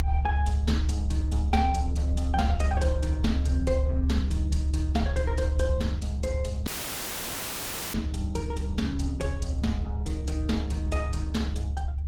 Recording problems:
lossy compression; Opus, log-spectral distance 2 dB
low-frequency rumble; below 72 Hz, strongest tone 70 Hz, SNR -5 dB
dropout; at 6.5 s for 1.5 s

